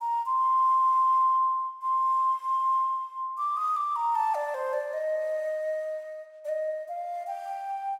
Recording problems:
none

